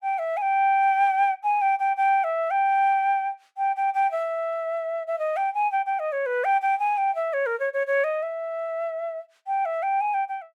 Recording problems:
none

